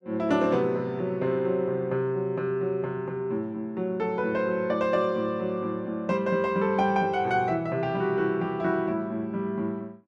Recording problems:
none

